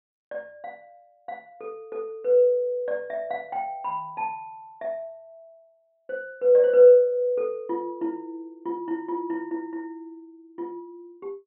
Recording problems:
low-pass filter; nothing above 4.1 kHz

